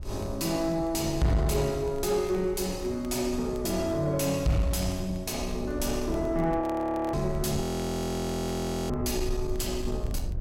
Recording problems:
distorted audio; soft clipping, signal-to-distortion ratio 11 dB
rumble; below 86 Hz, SNR 11 dB
crackling; vinyl, SNR 28 dB
audio freezing; at 6.5 s for 0.5 s and at 7.5 s for 1.5 s

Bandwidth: 16 kHz